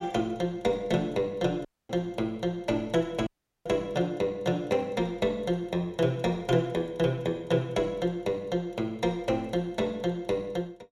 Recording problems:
audio cutting out; at 1.5 s and at 3.5 s

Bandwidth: 16 kHz